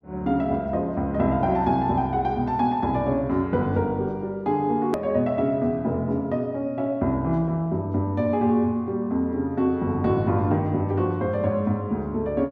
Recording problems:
click at an edit; at 5 s

